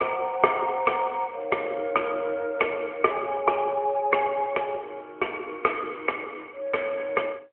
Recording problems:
phone line; 280 Hz to 3.1 kHz, AMR-NB

